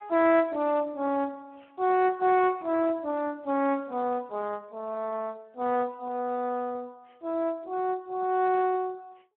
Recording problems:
telephone audio; 240 Hz to 3 kHz, Speex

